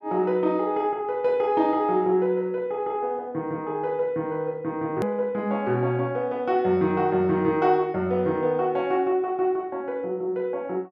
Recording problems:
hard cut with a click; at 5 s

